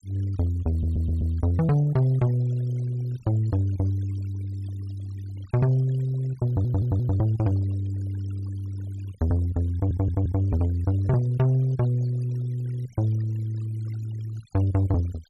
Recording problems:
denoising artefacts; signal-to-artefact ratio 23 dB
audio stuttering; at 0.5 s, at 6.5 s and at 9.5 s

